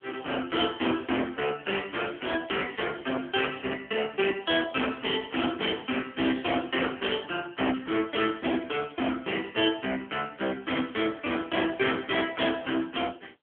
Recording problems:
phone line; 280 Hz to 3.4 kHz, AMR-NB
distorted audio; hard clipping, signal-to-distortion ratio 10 dB

